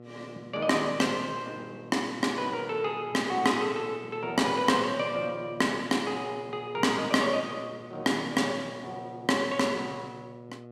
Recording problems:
mains hum; 60 Hz, harmonics up to 1.3 kHz, SNR 18 dB

